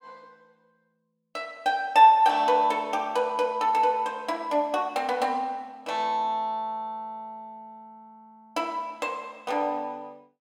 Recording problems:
none

